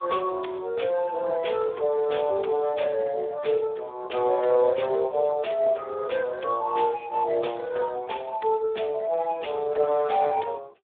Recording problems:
telephone audio; 340 Hz to 3.6 kHz, Speex

